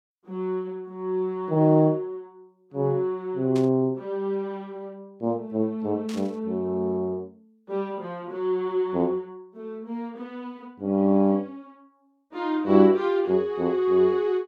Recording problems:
burst of static; at 3.5 s and at 6 s; peak -12 dB vs average level

